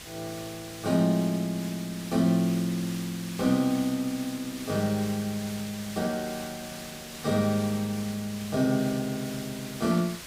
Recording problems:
hiss; slope 0 dB per octave, SNR 12 dB

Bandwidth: 15.5 kHz